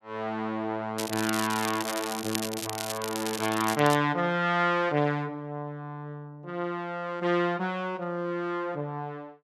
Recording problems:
crackling; from 1 to 4 s; loose cable, SNR 6 dB

